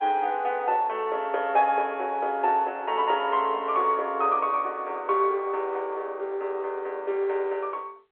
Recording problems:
phone line; 300 Hz to 3.3 kHz, G.711

